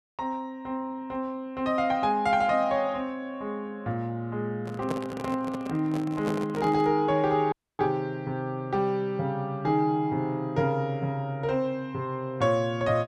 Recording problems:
handling noise; from 4.5 to 7 s; peak 0 dB vs average level
dropout; at 7.5 s

